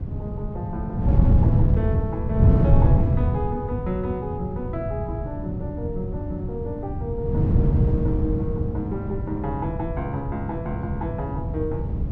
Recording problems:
wind on the microphone; below 150 Hz, SNR -6 dB

